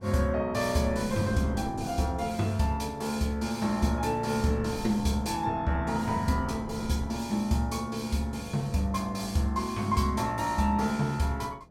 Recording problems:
wind noise; below 320 Hz, SNR 14 dB

